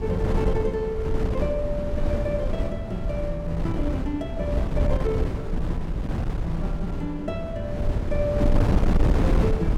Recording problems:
wind on the microphone; below 170 Hz, SNR -3 dB

